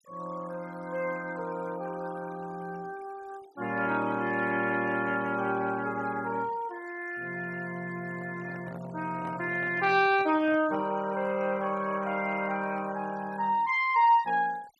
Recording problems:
noise reduction artefacts; signal-to-artefact ratio 23 dB
handling noise; from 8 to 11 s; peak -12 dB vs average level

